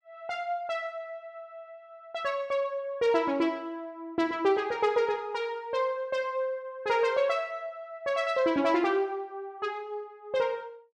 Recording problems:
none

